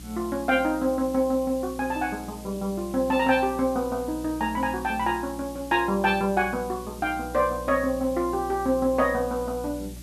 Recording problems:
electrical hum; 60 Hz, harmonics up to 360 Hz, SNR 17 dB
background hiss; slope +2 dB per octave, SNR 20 dB

